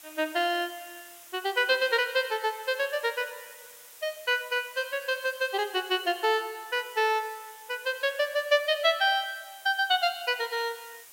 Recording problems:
background hiss; slope +1 dB per octave, SNR 19 dB

